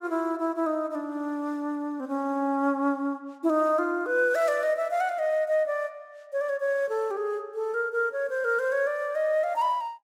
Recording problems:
none

